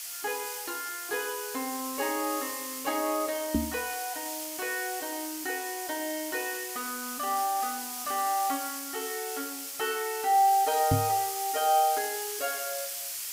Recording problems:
hiss; slope +4 dB per octave, SNR 4 dB
microphone bump; at 3.5 s and at 11 s; peak +8 dB vs average level

